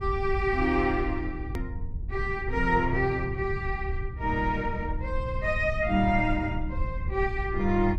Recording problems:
low-frequency rumble; below 84 Hz, SNR 7 dB
edit click; at 1.5 s

